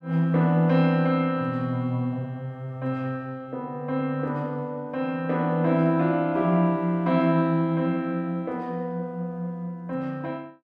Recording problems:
none

